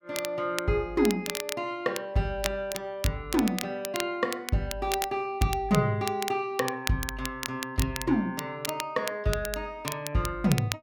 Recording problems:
crackle; vinyl, SNR 8 dB

